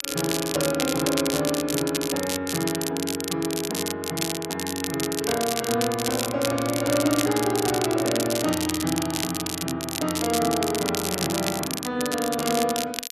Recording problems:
crackling; vinyl, SNR 3 dB

